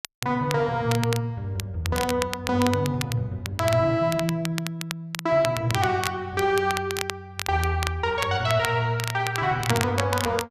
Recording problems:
crackling; vinyl, SNR 9 dB

